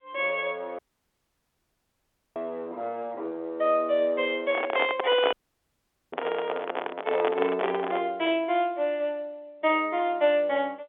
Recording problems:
phone line; 300 Hz to 3.5 kHz, G.711
audio cutting out; at 1 s for 1.5 s and at 5.5 s for 1 s
handling noise; from 4.5 to 8 s; peak +4 dB vs average level

